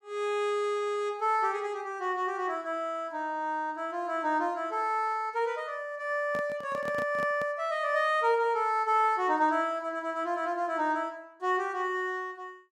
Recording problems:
microphone handling noise; from 6 to 7.5 s; peak -6 dB vs average level

